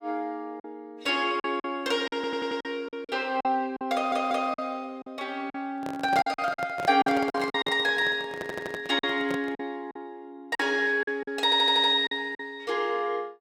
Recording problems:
packet loss; 9% of the sound replaced, filled with silence
stutter; 4 times, first at 2 s
handling noise; from 5.5 to 9.5 s; peak -4 dB vs average level

